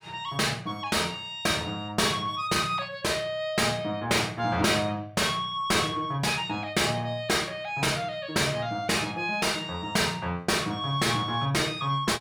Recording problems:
distorted audio; soft clipping, signal-to-distortion ratio 10 dB

